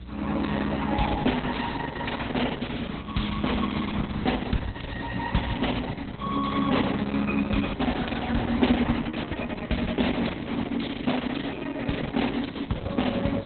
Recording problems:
lossy compression; Opus, log-spectral distance 13 dB, nothing above 4 kHz
hum; 60 Hz, harmonics up to 360 Hz, SNR 17 dB
hiss; SNR 24 dB

